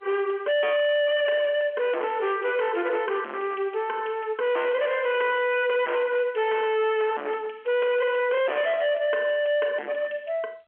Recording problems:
phone line; 280 Hz to 3.5 kHz, G.711
distorted audio; hard clipping, signal-to-distortion ratio 5 dB

